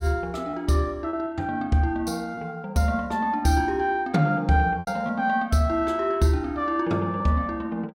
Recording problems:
packet loss; 3% of the sound replaced, filled with repeated pitch periods

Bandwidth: 16.5 kHz